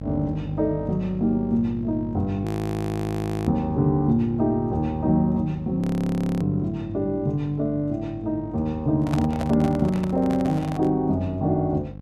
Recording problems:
hum; 50 Hz, harmonics up to 850 Hz, SNR 13 dB
frozen audio; at 2.5 s for 1 s and at 6 s for 0.5 s
handling noise; from 9 to 11 s; peak 0 dB vs average level

